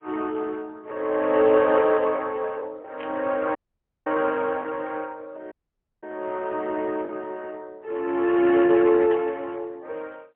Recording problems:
telephone audio; 280 Hz to 3.3 kHz, AMR-NB, then MP3
packet loss; 1.5% of the sound replaced, filled with the last packet
static burst; at 1.5 s, at 3 s and at 9 s; peak -15 dB vs average level
dropout; at 3.5 s for 0.5 s and at 5.5 s for 0.5 s

